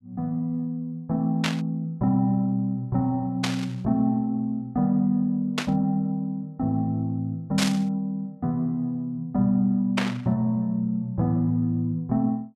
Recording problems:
burst of static; 5 times, first at 1.5 s; peak +4 dB vs average level

